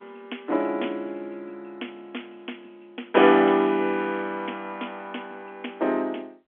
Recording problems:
telephone audio; 240 Hz to 3.4 kHz, G.711

